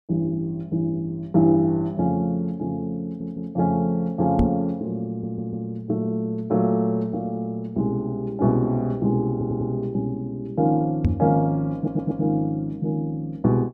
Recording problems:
stutter; 4 times, first at 3 s
knock on the microphone; at 4.5 s and at 11 s; peak +7 dB vs average level

